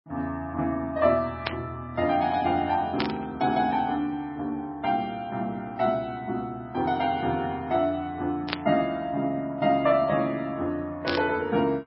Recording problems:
lossy compression; MP3, log-spectral distance 2 dB
burst of static; 4 times, first at 1.5 s; peak +2 dB vs average level

